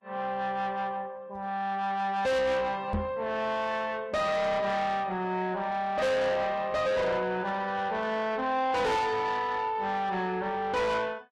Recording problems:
lossy codec; Vorbis, log-spectral distance 2 dB, nothing above 13.1 kHz
distortion; soft clipping, signal-to-distortion ratio 7 dB
knock on the microphone; at 3 s; peak +2 dB vs average level

